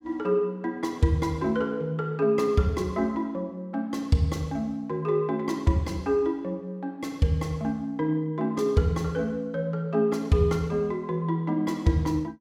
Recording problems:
none

